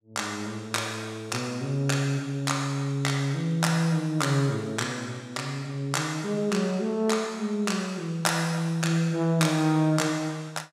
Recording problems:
none

